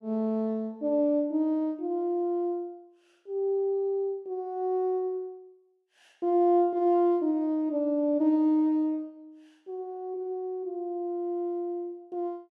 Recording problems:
none

